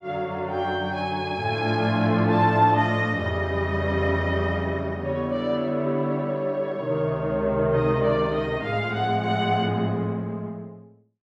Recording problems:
none

